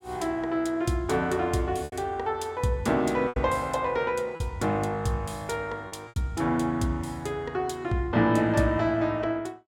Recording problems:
packet loss; 3% of the sound replaced, filled with repeated pitch periods

